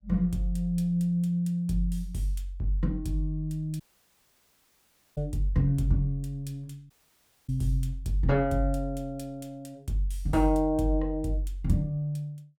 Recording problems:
audio cutting out; at 4 s for 1.5 s and at 7 s for 0.5 s

